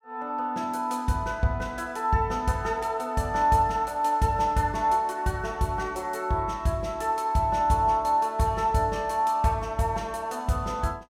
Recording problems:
none

